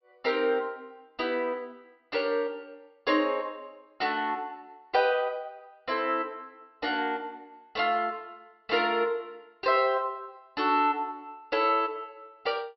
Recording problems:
treble cut off; nothing above 5.5 kHz

